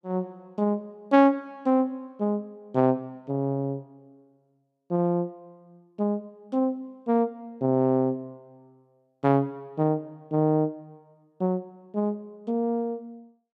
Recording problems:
none

